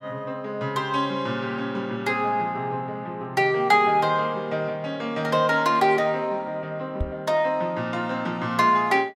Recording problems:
knock on the microphone; at 7 s; peak 0 dB vs average level

